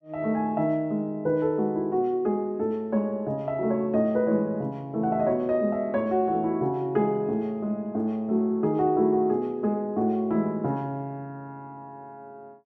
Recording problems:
none

